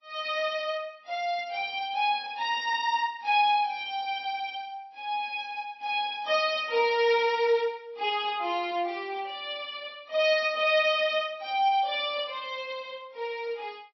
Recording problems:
codec artefacts; AAC, then MP3, log-spectral distance 2 dB, nothing above 5 kHz

